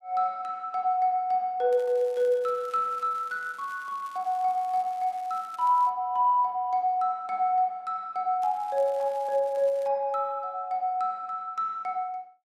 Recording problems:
crackling; from 1.5 to 6 s and from 8.5 to 10 s; loose cable, SNR 27 dB

